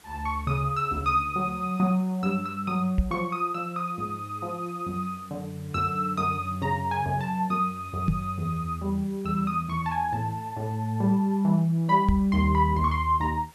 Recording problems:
hiss; slope -2 dB per octave, SNR 26 dB
microphone bump; at 3 s, at 8 s and at 12 s; peak +6 dB vs average level

